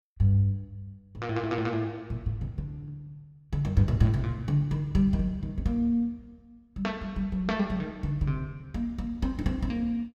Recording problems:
none

